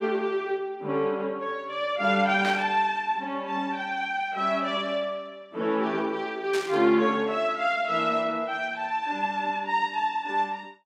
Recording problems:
static burst; at 2.5 s and at 6.5 s; peak -3 dB vs average level

